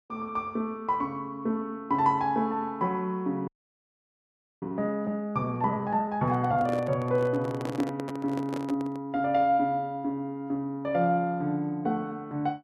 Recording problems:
frozen audio; at 3.5 s for 1 s
handling noise; from 6 to 9 s; peak -1 dB vs average level

